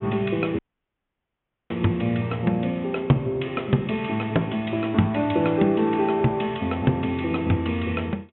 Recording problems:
treble cut off; nothing above 3.6 kHz
dropout; at 0.5 s for 1 s

